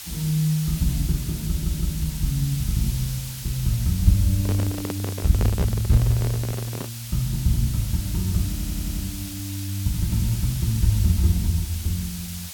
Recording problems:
hiss; slope +3 dB per octave, SNR 10 dB
audio stuttering; at 1.5 s and at 8.5 s
handling noise; from 4.5 to 7 s; peak -1 dB vs average level

